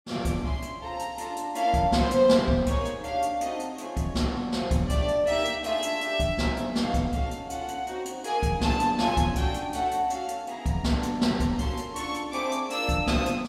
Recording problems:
none

